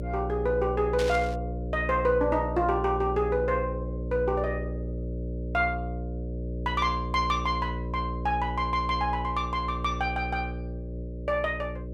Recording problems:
hum; 60 Hz, harmonics up to 600 Hz, SNR 6 dB
static burst; at 1 s; peak -4 dB vs average level

